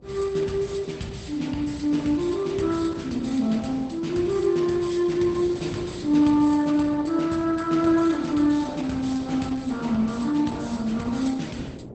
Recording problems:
codec artefacts; Opus, log-spectral distance 4 dB, nothing above 8.2 kHz
wind on the microphone; below 360 Hz, SNR 20 dB

